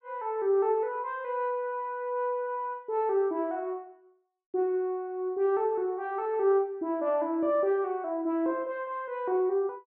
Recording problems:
none

